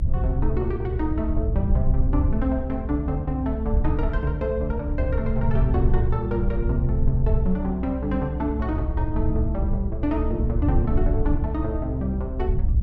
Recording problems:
rumble; below 76 Hz, SNR -1 dB

